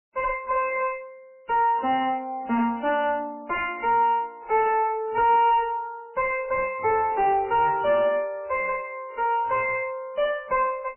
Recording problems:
lossy compression; MP3, log-spectral distance 2 dB, nothing above 2.9 kHz
distortion; soft clipping, signal-to-distortion ratio 5 dB

